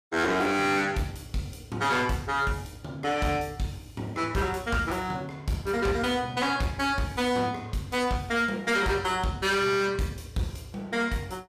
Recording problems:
distortion; hard clipping, signal-to-distortion ratio 11 dB

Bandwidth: 15 kHz